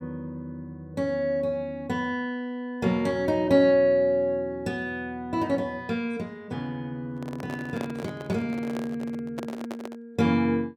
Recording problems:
microphone handling noise; from 7 to 10 s; peak -4 dB vs average level

